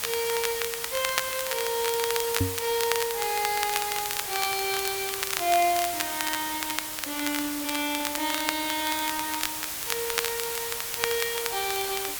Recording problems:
background hiss; slope +1 dB per octave, SNR 1 dB
crackling; vinyl, SNR 4 dB
microphone thump; at 2.5 s; peak +7 dB vs average level

